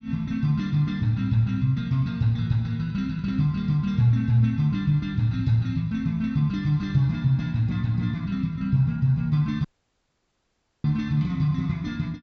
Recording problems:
low-pass filter; nothing above 7.7 kHz
dropout; at 9.5 s for 1 s

